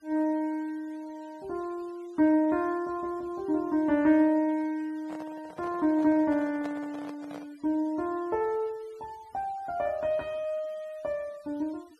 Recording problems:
noise reduction artefacts; signal-to-artefact ratio 28 dB
microphone handling noise; from 5 to 7.5 s; peak -8 dB vs average level

